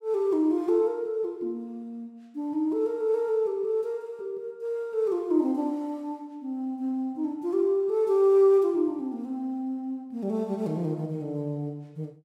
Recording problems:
none

